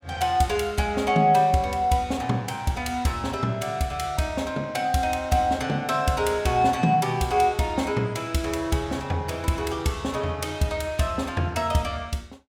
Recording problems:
none

